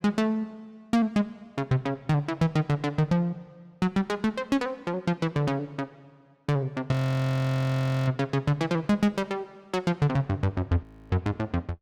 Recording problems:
frozen audio; at 7 s for 1 s and at 11 s

